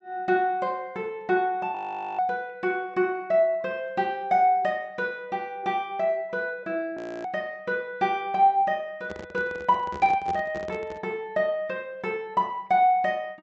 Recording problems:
treble missing; nothing above 8 kHz
frozen audio; at 2 s and at 7 s
handling noise; from 9 to 11 s; peak -6 dB vs average level

